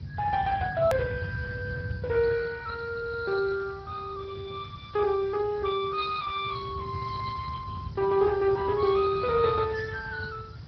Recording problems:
treble missing; nothing above 5.5 kHz
lossy codec; Speex, log-spectral distance 7 dB
hiss; SNR 27 dB
low-frequency rumble; below 150 Hz, SNR 11 dB
edit click; at 1 s

